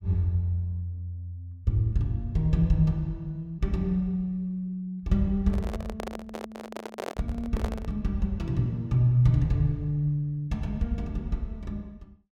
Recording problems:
microphone handling noise; from 5.5 to 8 s; peak -3 dB vs average level

